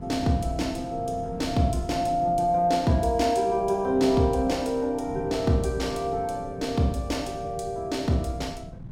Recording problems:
wind on the microphone; below 190 Hz, SNR 14 dB

